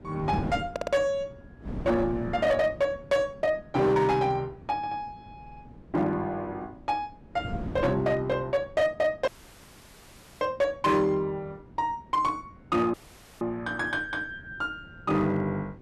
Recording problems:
distortion; hard clipping, signal-to-distortion ratio 12 dB
wind noise; below 300 Hz, SNR 15 dB
audio stuttering; at 0.5 s, at 5 s and at 5.5 s
audio cutting out; at 9.5 s for 1 s and at 13 s

